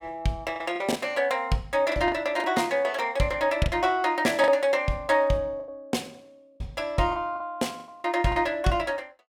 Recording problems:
lost packets; 8% of the sound replaced, filled with the last packet

